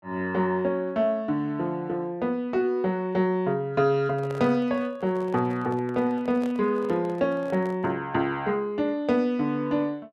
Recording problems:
handling noise; from 4 to 8 s; peak -10 dB vs average level

